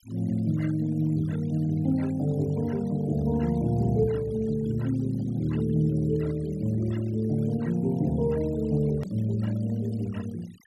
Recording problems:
denoising artefacts; signal-to-artefact ratio 22 dB
click at an edit; at 9 s

